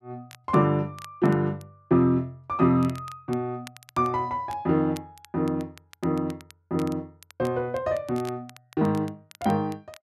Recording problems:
crackle; vinyl, SNR 23 dB

